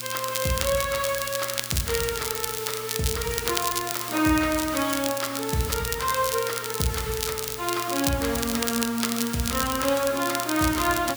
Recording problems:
hum; 60 Hz, harmonics up to 480 Hz, SNR 20 dB
hiss; SNR 9 dB
crackle; vinyl, SNR 4 dB

